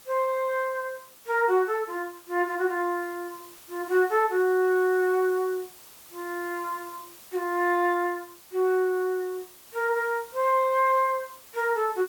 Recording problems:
hiss; slope -1 dB per octave, SNR 21 dB

